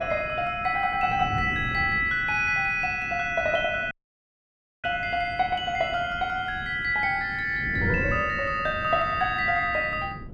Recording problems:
wind on the microphone; below 250 Hz, SNR 13 dB
dropout; at 4 s for 1 s

